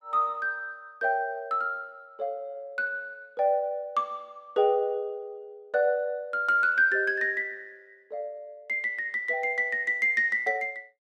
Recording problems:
none

